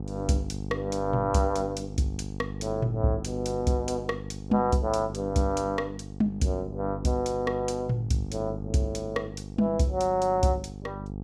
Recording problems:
hum; 50 Hz, harmonics up to 850 Hz, SNR 9 dB

